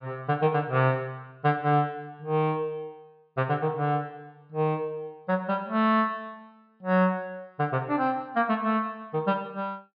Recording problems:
treble cut off; nothing above 5.5 kHz

